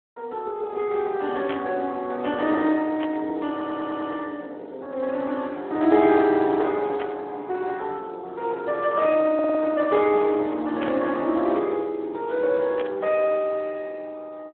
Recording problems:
telephone audio; 260 Hz to 3.6 kHz, Speex
burst of static; 5 times, first at 1.5 s; peak -5 dB vs average level
audio stuttering; at 3.5 s and at 9.5 s

